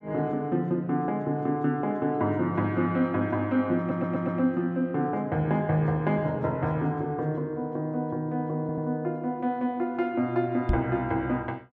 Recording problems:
stutter; at 4 s and at 8.5 s
microphone bump; at 11 s; peak +5 dB vs average level

